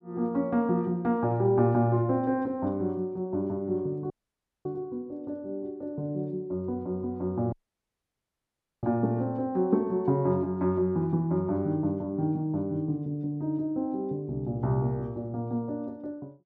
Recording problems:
dropout; at 4 s for 0.5 s and at 7.5 s for 1.5 s

